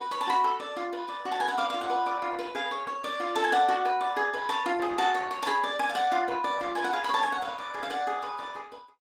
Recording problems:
lossy codec; Opus, log-spectral distance 4 dB, nothing above 19 kHz

